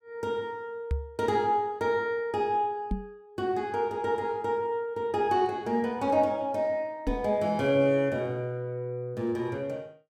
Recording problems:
microphone bump; at 1 s, at 3 s and at 7 s; peak +2 dB vs average level

